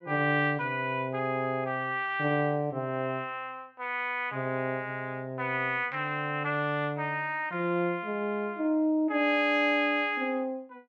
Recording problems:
none

